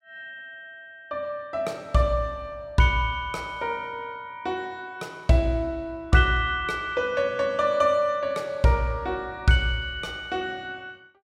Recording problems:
none

